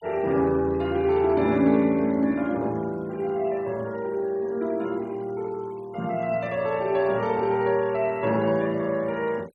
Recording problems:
noise reduction artefacts; signal-to-artefact ratio 26 dB

